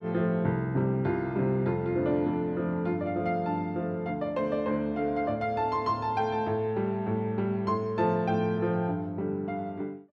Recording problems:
none

